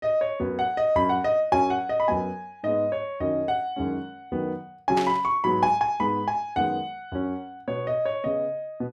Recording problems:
burst of static; at 5 s; peak -3 dB vs average level

